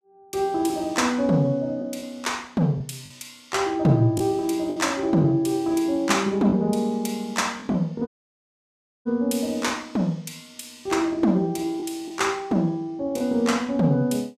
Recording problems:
lost packets; 3% of the sound replaced, filled with the last packet
audio cutting out; at 8 s for 1 s

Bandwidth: 15 kHz